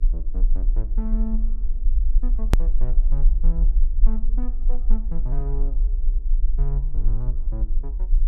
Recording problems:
mains hum; 60 Hz, harmonics up to 480 Hz, SNR 19 dB
low-frequency rumble; below 38 Hz, SNR -11 dB
click at an edit; at 2.5 s

